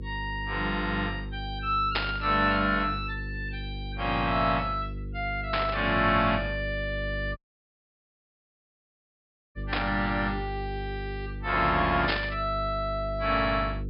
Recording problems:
treble missing; nothing above 5.5 kHz
hum; 50 Hz, harmonics up to 500 Hz, SNR 9 dB
static burst; 4 times, first at 2 s; peak +4 dB vs average level
audio cutting out; at 7.5 s for 2 s

